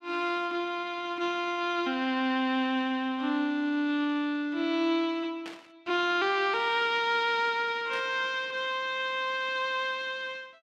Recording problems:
static burst; at 5.5 s and at 8 s; peak -10 dB vs average level

